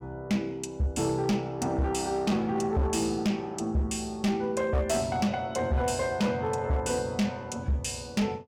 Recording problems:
distortion; hard clipping, signal-to-distortion ratio 10 dB

